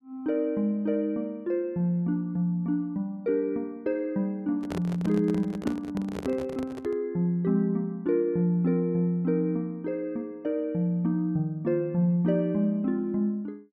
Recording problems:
handling noise; from 4.5 to 7 s; peak -2 dB vs average level

